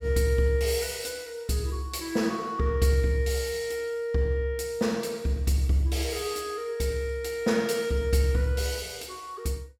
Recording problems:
none

